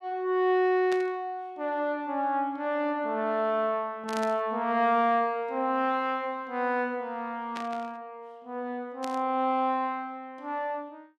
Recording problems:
burst of static; 4 times, first at 1 s; peak -6 dB vs average level

